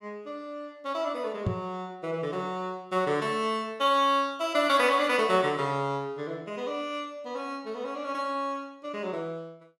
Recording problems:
microphone thump; at 1.5 s; peak +3 dB vs average level

